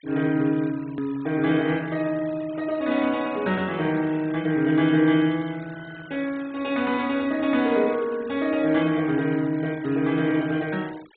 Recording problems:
treble cut off; nothing above 4 kHz
denoising artefacts; signal-to-artefact ratio 22 dB
edit click; at 1 s

